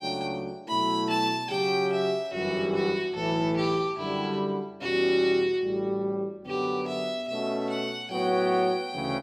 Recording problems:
none

